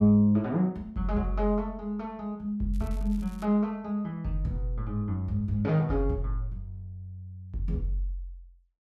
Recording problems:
crackling; at 2.5 s; loose cable, SNR 27 dB

